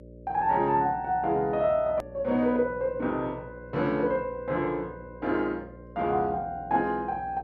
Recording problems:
hum; 60 Hz, harmonics up to 600 Hz, SNR 19 dB
hard cut with a click; at 2 s

